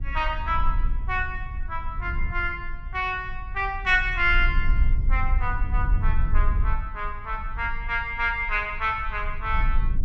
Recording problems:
rumble; below 52 Hz, strongest tone 22 Hz, SNR 3 dB

